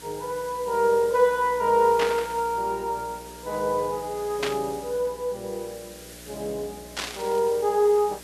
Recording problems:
hum; 60 Hz, harmonics up to 660 Hz, SNR 23 dB
background hiss; SNR 18 dB
static burst; at 2 s, at 4.5 s and at 7 s; peak +1 dB vs average level

